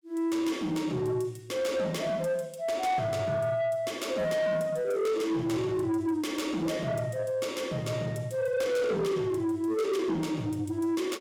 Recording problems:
distortion; soft clipping, signal-to-distortion ratio 12 dB

